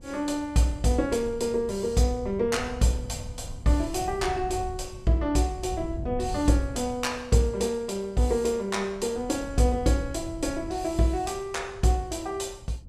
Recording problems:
wind noise; below 110 Hz, SNR 14 dB

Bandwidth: 15 kHz